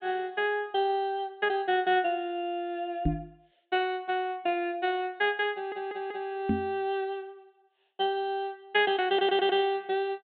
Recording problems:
low-pass filter; nothing above 4 kHz
knock on the microphone; at 3 s and at 6.5 s; peak +5 dB vs average level
audio stuttering; at 5.5 s and at 9 s

